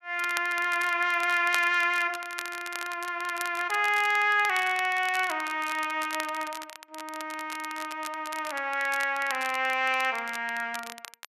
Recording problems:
crackle; vinyl, SNR 14 dB

